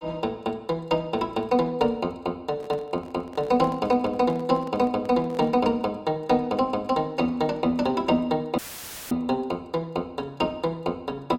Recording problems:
microphone handling noise; from 2.5 to 5.5 s; peak -10 dB vs average level
audio cutting out; at 8.5 s for 0.5 s; filled with static

